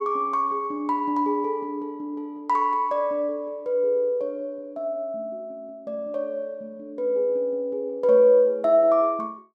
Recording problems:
none

